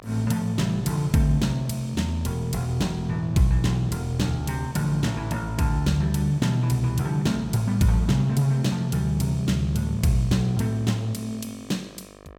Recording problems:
electrical hum; 50 Hz, harmonics up to 2.5 kHz, SNR 24 dB

